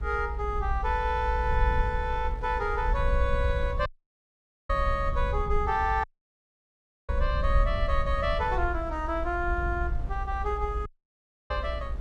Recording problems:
rumble; below 62 Hz, SNR 2 dB
wind noise; below 740 Hz, SNR 19 dB
audio cutting out; at 4 s for 1 s, at 6 s for 1 s and at 11 s for 0.5 s

